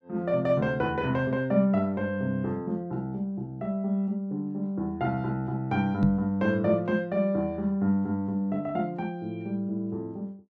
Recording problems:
knock on the microphone; at 6 s; peak +7 dB vs average level

